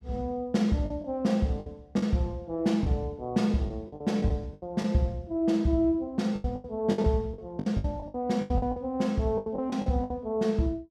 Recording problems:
packet loss; 12% of the sound replaced, filled with the last packet

